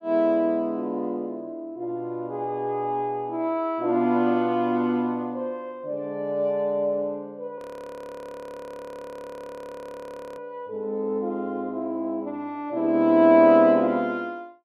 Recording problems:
audio freezing; at 7.5 s for 3 s

